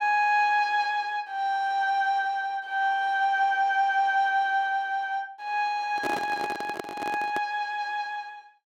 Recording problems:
handling noise; from 6 to 7.5 s; peak -2 dB vs average level

